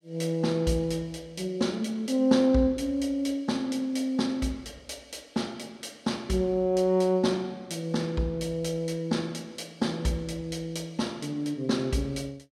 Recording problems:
none

